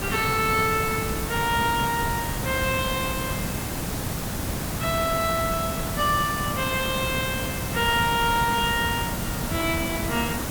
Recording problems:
hiss; slope -4 dB per octave, SNR 3 dB
crackling; from 6.5 to 9 s; loose cable, SNR 27 dB

